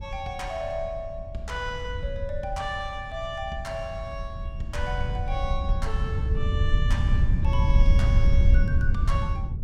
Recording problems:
low-frequency rumble; below 82 Hz, SNR -8 dB

